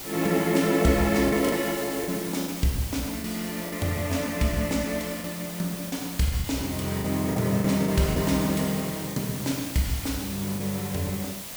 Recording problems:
background hiss; slope -1 dB per octave, SNR 9 dB
lost packets; 6% of the sound replaced, filled with the last packet

